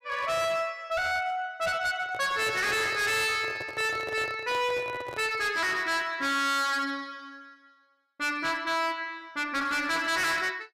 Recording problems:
distortion; hard clipping, uneven, signal-to-distortion ratio 6 dB
handling noise; from 2 to 5.5 s; peak -6 dB vs average level

